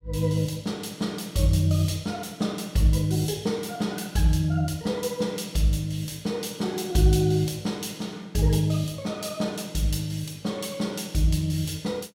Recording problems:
none

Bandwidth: 16.5 kHz